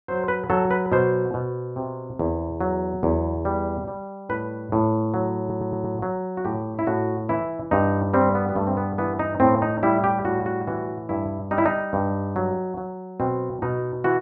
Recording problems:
stutter; at 5.5 s

